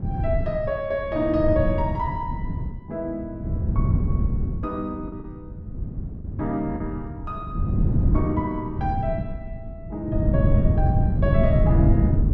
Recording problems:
wind on the microphone; below 160 Hz, SNR -3 dB
packet loss; 1.2% of the sound replaced, filled with the last packet

